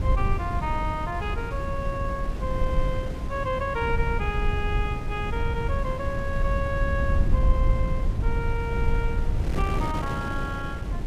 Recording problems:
rumble; below 80 Hz, SNR -1 dB
wind on the microphone; below 290 Hz, SNR 3 dB

